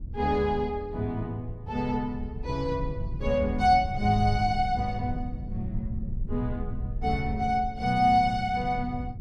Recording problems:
low-frequency rumble; below 98 Hz, SNR 10 dB

